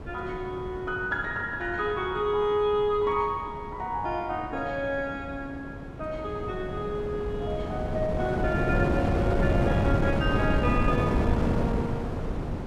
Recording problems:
wind on the microphone; below 380 Hz, SNR -1 dB

